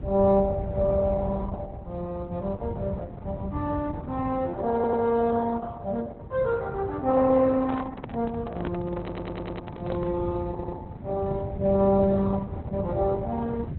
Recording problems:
lossy compression; Opus, log-spectral distance 2 dB, nothing above 4.1 kHz
low-frequency rumble; below 140 Hz, SNR 7 dB
stutter; at 4.5 s, at 9 s and at 11 s
handling noise; from 7.5 to 10 s; peak -2 dB vs average level

